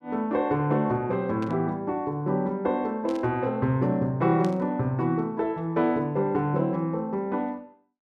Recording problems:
static burst; at 1.5 s, at 3 s and at 4.5 s; peak -12 dB vs average level

